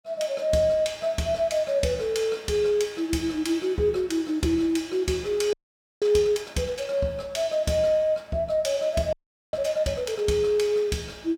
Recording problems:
frozen audio; at 5.5 s and at 9 s

